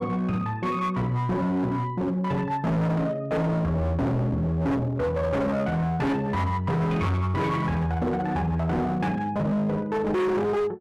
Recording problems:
distorted audio; hard clipping, signal-to-distortion ratio 7 dB

